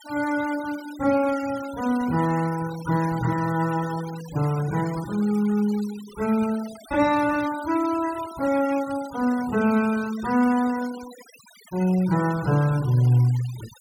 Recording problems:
noise reduction artefacts; signal-to-artefact ratio 17 dB

